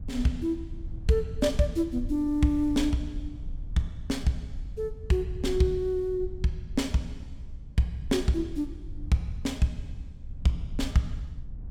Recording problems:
rumble; below 70 Hz, SNR 11 dB

